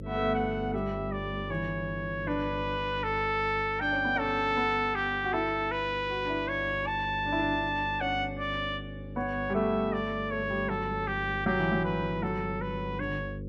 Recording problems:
hum; 50 Hz, harmonics up to 550 Hz, SNR 10 dB

